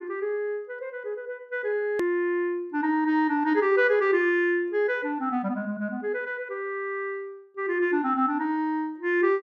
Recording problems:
click at an edit; at 2 s

